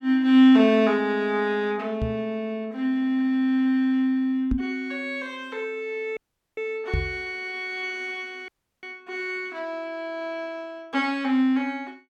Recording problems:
knock on the microphone; at 2 s, at 4.5 s and at 7 s; peak +1 dB vs average level
dropout; at 6 s and at 8.5 s

